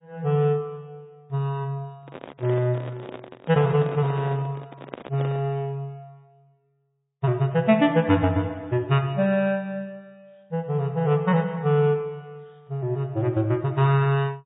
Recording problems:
treble missing; nothing above 3.8 kHz
codec artefacts; MP3, log-spectral distance 2 dB
microphone handling noise; from 2 to 5.5 s; peak -7 dB vs average level

